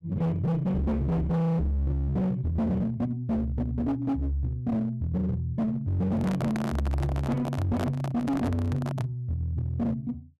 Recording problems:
distorted audio; hard clipping, uneven, signal-to-distortion ratio 7 dB
handling noise; from 6 to 9 s; peak 0 dB vs average level

